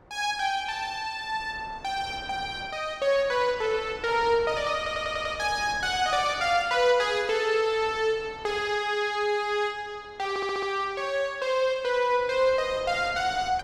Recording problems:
wind noise; below 910 Hz, SNR 21 dB
stutter; at 5 s and at 10 s

